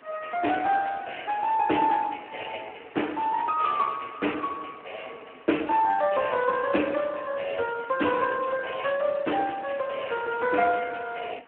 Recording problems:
phone line; 240 Hz to 3 kHz, Speex
background hiss; SNR 26 dB

